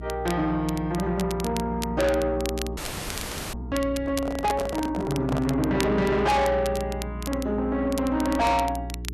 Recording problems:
distorted audio; soft clipping, signal-to-distortion ratio 7 dB
mains hum; 60 Hz, harmonics up to 420 Hz, SNR 11 dB
crackling; vinyl, SNR 14 dB
audio freezing; at 3 s for 1 s
handling noise; from 4 to 5.5 s; peak 0 dB vs average level

